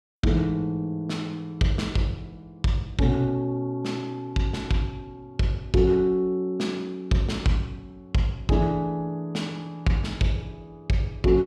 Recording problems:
none

